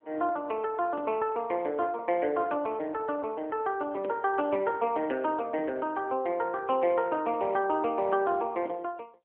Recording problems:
phone line; 240 Hz to 3.2 kHz, AMR-NB

